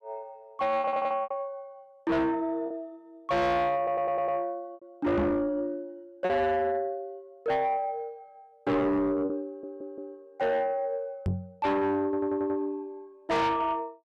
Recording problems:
distorted audio; soft clipping, signal-to-distortion ratio 7 dB
lost packets; 3% of the sound replaced, filled with repeated pitch periods
stutter; 4 times, first at 1 s
microphone bump; at 5 s and at 11 s; peak +5 dB vs average level

